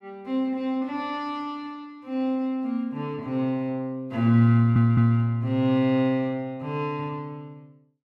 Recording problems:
stutter; at 4.5 s

